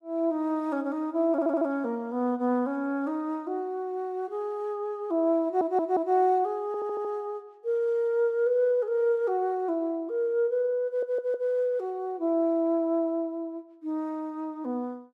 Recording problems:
stutter; 4 times, first at 1.5 s

